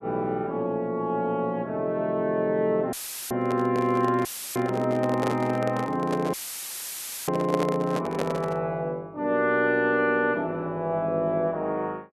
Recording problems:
audio cutting out; at 3 s, at 4.5 s and at 6.5 s for 1 s; filled with static
handling noise; from 3.5 to 8.5 s; peak +1 dB vs average level

